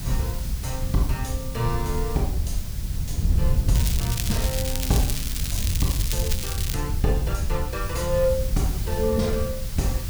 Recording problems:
background hiss; slope +2 dB per octave, SNR 10 dB
wind on the microphone; below 92 Hz, SNR 0 dB
crackling; from 4 to 6.5 s; loose cable, SNR 2 dB

